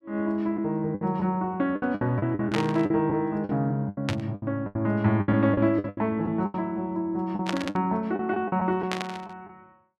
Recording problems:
packet loss; 12% of the sound replaced, filled with the last packet
static burst; 4 times, first at 2.5 s; peak +1 dB vs average level

